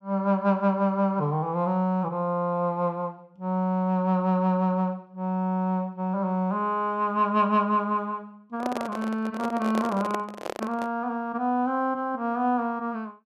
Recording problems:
microphone handling noise; from 8.5 to 11 s; peak -1 dB vs average level

